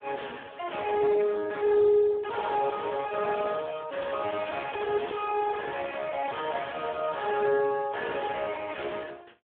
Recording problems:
telephone audio; 280 Hz to 2.2 kHz, Speex
distortion; soft clipping, signal-to-distortion ratio 9 dB

